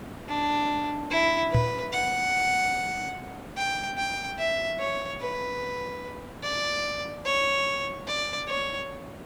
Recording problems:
hiss; slope -7 dB per octave, SNR 15 dB
microphone thump; at 1.5 s; peak +7 dB vs average level

